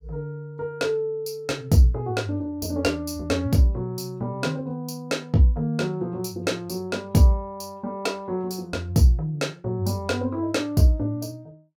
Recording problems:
none

